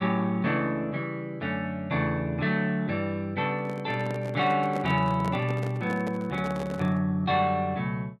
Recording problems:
microphone handling noise; from 3.5 to 7 s; peak -5 dB vs average level

